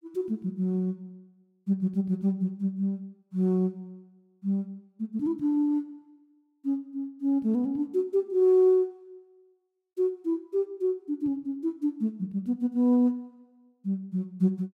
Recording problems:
none

